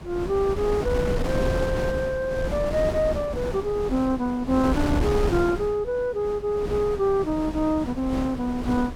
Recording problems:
wind on the microphone; below 400 Hz, SNR 5 dB

